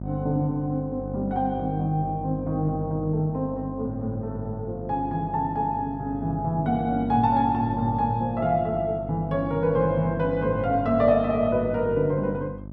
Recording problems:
electrical hum; 50 Hz, harmonics up to 650 Hz, SNR 10 dB

